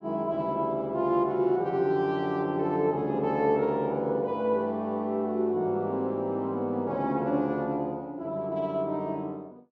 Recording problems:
none

